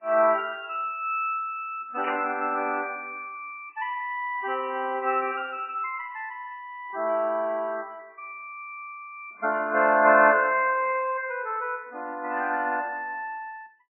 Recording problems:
codec artefacts; MP3, log-spectral distance 3 dB, nothing above 2.7 kHz
burst of static; at 2 s; peak -3 dB vs average level

